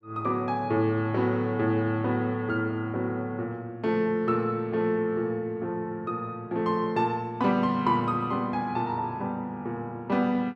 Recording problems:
none

